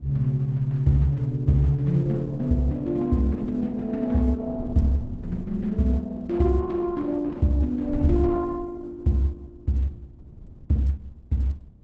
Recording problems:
lossy compression; Opus, log-spectral distance 2 dB, nothing above 7.8 kHz
wind on the microphone; below 150 Hz, SNR 16 dB

